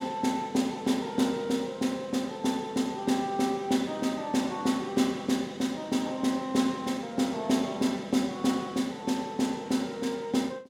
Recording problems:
none

